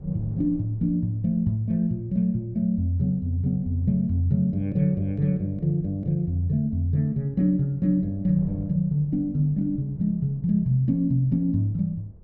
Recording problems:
wind noise; below 180 Hz, SNR 21 dB

